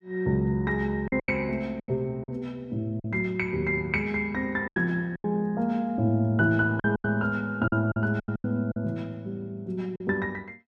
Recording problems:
packet loss; 8% of the sound replaced, filled with silence

